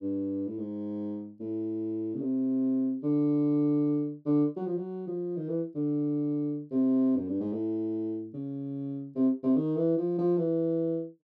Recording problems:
none

